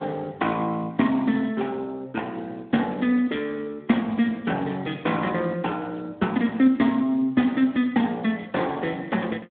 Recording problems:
telephone audio; 190 Hz to 3.4 kHz, Speex

